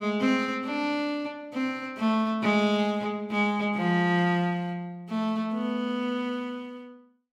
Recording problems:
none

